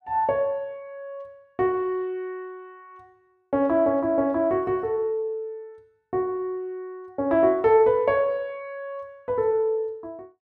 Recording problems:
none

